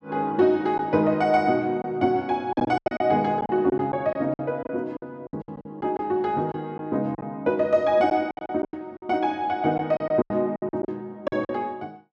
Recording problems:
packet loss; 11% of the sound replaced, filled with silence

